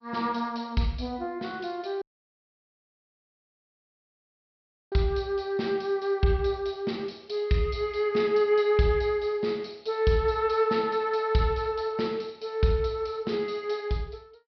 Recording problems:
treble cut off; nothing above 5.5 kHz
codec artefacts; MP2, log-spectral distance 4 dB
dropout; at 2 s for 3 s

